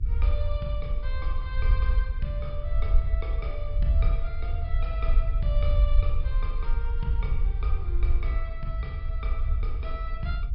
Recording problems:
low-pass filter; nothing above 5.5 kHz
hum; 50 Hz, harmonics up to 400 Hz, SNR 15 dB
rumble; below 60 Hz, SNR -9 dB

